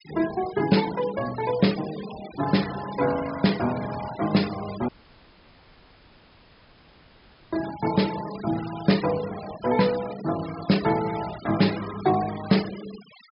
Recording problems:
low-pass filter; nothing above 5.5 kHz
noise reduction artefacts; signal-to-artefact ratio 14 dB
audio cutting out; at 5 s for 2.5 s

